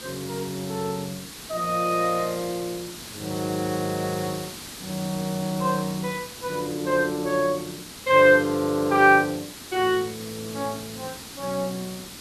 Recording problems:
hiss; SNR 13 dB

